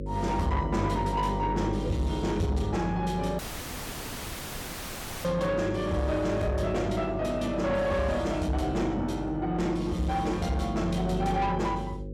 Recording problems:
distortion; soft clipping, signal-to-distortion ratio 10 dB
hum; 50 Hz, harmonics up to 550 Hz, SNR 8 dB
audio cutting out; at 3.5 s for 2 s

